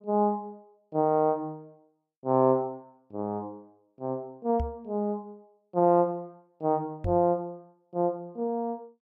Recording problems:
microphone thump; at 4.5 s and at 7 s; peak -1 dB vs average level

